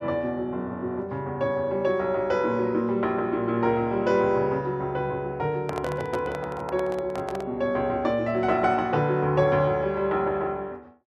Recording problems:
microphone handling noise; from 5.5 to 7.5 s; peak -4 dB vs average level

